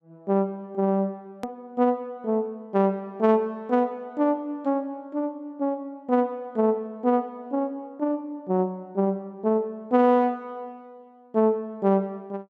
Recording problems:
edit click; at 1.5 s

